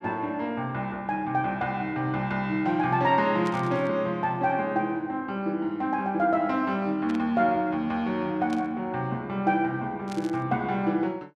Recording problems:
static burst; 4 times, first at 3.5 s; peak -11 dB vs average level

